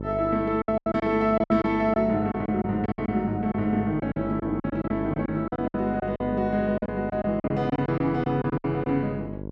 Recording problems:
hum; 50 Hz, harmonics up to 1 kHz, SNR 11 dB
packet loss; 13% of the sound replaced, filled with silence

